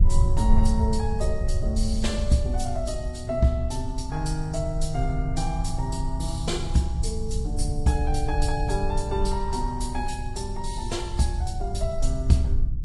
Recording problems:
lossy codec; Vorbis, then Vorbis, log-spectral distance 2 dB, nothing above 10.4 kHz
low-frequency rumble; below 68 Hz, SNR 1 dB

